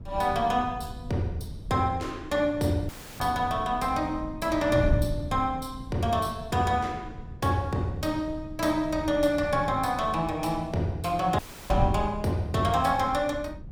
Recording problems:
wind on the microphone; below 130 Hz, SNR 10 dB
dropout; at 3 s and at 11 s

